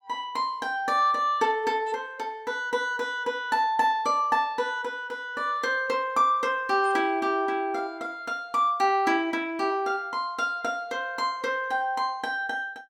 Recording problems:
none

